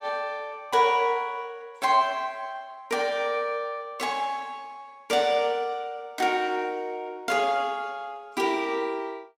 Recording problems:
none

